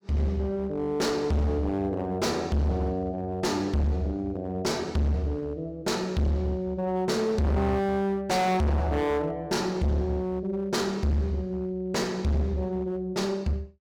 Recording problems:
distortion; hard clipping, uneven, signal-to-distortion ratio 5 dB

